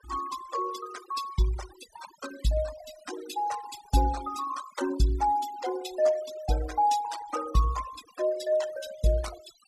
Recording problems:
noise reduction artefacts; signal-to-artefact ratio 13 dB

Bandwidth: 14.5 kHz